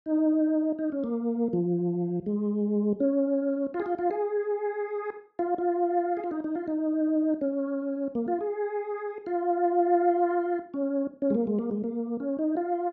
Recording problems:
none

